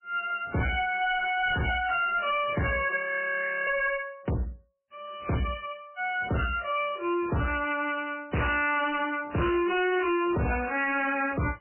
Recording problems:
lossy codec; MP3, log-spectral distance 5 dB, nothing above 2.9 kHz
distorted audio; hard clipping, signal-to-distortion ratio 6 dB
audio freezing; at 3 s for 0.5 s

